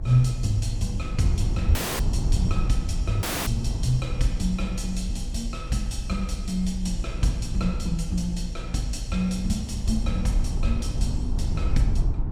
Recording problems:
electrical hum; 60 Hz, harmonics up to 600 Hz, SNR 12 dB
rumble; below 76 Hz, SNR 2 dB
wind on the microphone; below 120 Hz, SNR 19 dB
audio cutting out; at 2 s and at 3 s

